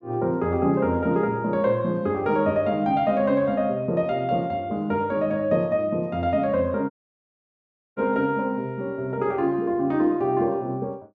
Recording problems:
audio cutting out; at 7 s for 1 s

